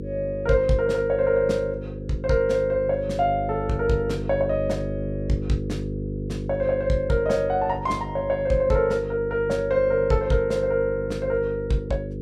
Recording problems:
electrical hum; 50 Hz, harmonics up to 500 Hz, SNR 8 dB

